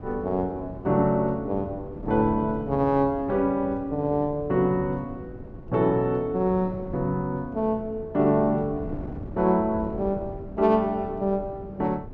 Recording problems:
wind noise; below 300 Hz, SNR 14 dB

